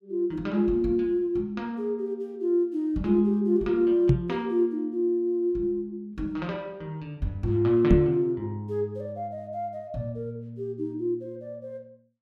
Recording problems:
microphone bump; at 4 s and at 8 s; peak +9 dB vs average level

